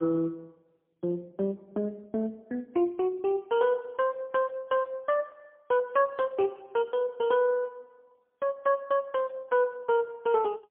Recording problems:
telephone audio; 240 Hz to 2.1 kHz, AMR-NB, then MP3

